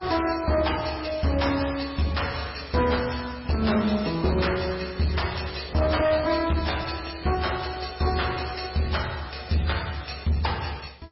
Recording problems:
lossy compression; AAC, then MP3, log-spectral distance 9 dB, nothing above 5.5 kHz
distortion; hard clipping, uneven, signal-to-distortion ratio 10 dB

